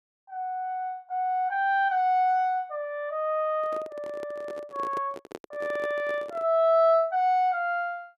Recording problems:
handling noise; from 3.5 to 6.5 s; peak -8 dB vs average level

